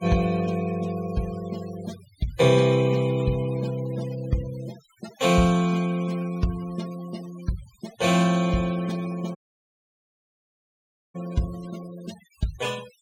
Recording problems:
denoising artefacts; signal-to-artefact ratio 19 dB
audio cutting out; at 9.5 s for 2 s

